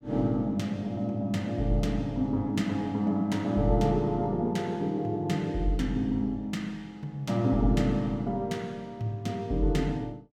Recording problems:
none

